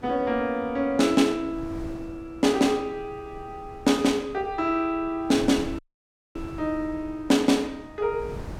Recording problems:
wind noise; below 340 Hz, SNR 19 dB
dropout; at 6 s for 0.5 s

